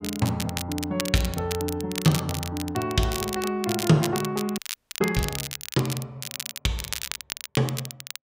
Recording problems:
crackling; vinyl, SNR 7 dB
audio freezing; at 4.5 s

